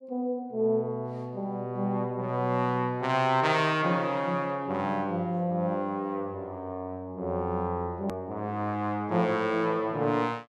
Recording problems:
hard cut with a click; at 8 s

